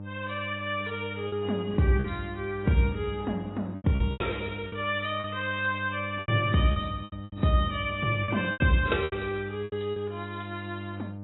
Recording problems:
codec artefacts; AAC, log-spectral distance 5 dB, nothing above 3.8 kHz
hum; 50 Hz, harmonics up to 900 Hz, SNR 10 dB
packet loss; 8% of the sound replaced, filled with repeated pitch periods

